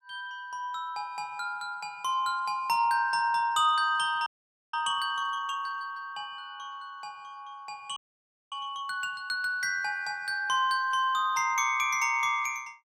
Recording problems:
audio freezing; at 4.5 s and at 8 s for 0.5 s

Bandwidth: 15 kHz